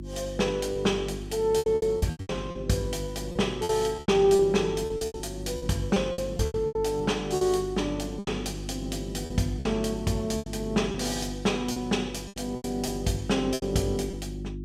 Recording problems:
electrical hum; 50 Hz, harmonics up to 350 Hz, SNR 10 dB
packet loss; 12% of the sound replaced, filled with repeated pitch periods

